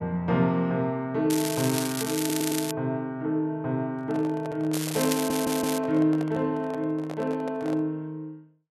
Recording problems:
crackle; from 1.5 to 2.5 s and from 4.5 to 6 s; loose cable, SNR 5 dB
audio stuttering; at 2 s and at 5 s
handling noise; from 4 to 8 s; peak -7 dB vs average level

